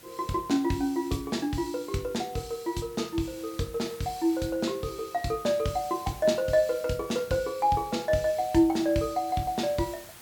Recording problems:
background hiss; slope -2 dB per octave, SNR 20 dB

